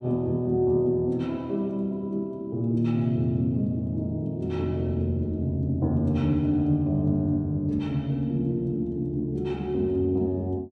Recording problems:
none

